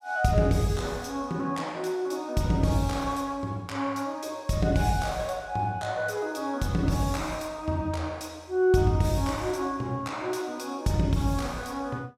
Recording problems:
none

